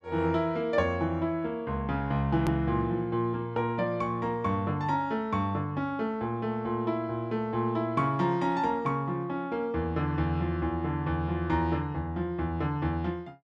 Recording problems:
click at an edit; at 2.5 s

